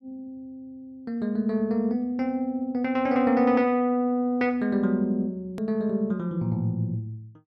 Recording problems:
hard cut with a click; at 5.5 s

